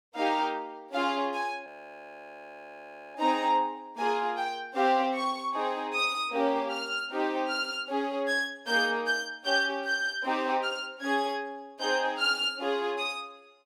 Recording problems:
frozen audio; at 1.5 s for 1.5 s

